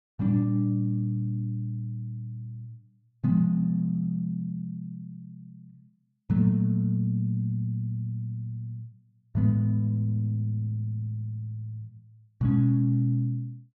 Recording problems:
none

